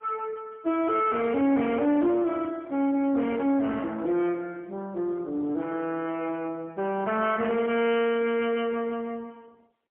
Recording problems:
telephone audio; 240 Hz to 3.2 kHz, AMR-NB, then MP3
distortion; soft clipping, signal-to-distortion ratio 11 dB

